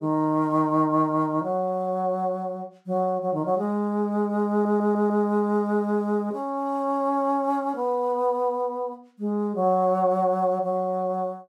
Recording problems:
audio stuttering; at 4.5 s

